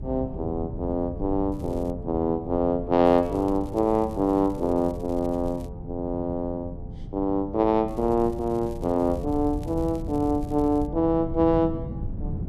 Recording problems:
wind on the microphone; below 160 Hz, SNR 11 dB
crackling; at 1.5 s, from 3 to 5.5 s and from 8 to 11 s; loose cable, SNR 30 dB

